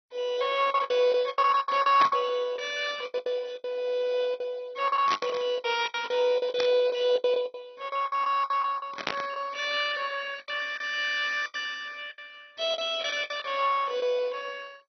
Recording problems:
lossy codec; MP2, log-spectral distance 4 dB, nothing above 5.8 kHz
lost packets; 15% of the sound replaced, filled with the last packet
burst of static; 4 times, first at 2 s; peak +2 dB vs average level

